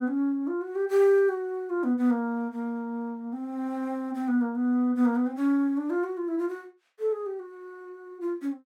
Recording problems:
none

